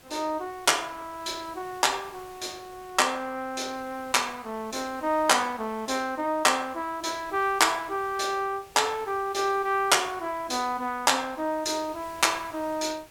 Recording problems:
hiss; slope -3 dB per octave, SNR 23 dB

